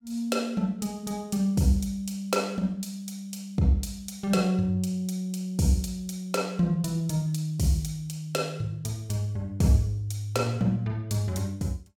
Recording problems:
none

